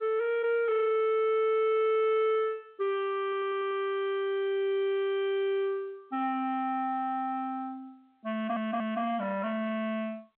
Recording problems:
phone line; 240 Hz to 2.6 kHz, G.711
distortion; soft clipping, signal-to-distortion ratio 10 dB
stutter; at 3 s and at 8.5 s

